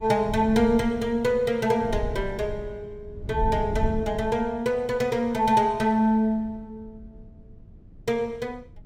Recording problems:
wind noise; below 110 Hz, SNR 12 dB

